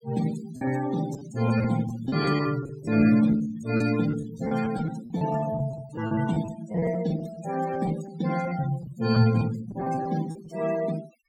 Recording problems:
noise reduction artefacts; signal-to-artefact ratio 13 dB
packet loss; 11% of the sound replaced, filled with repeated pitch periods

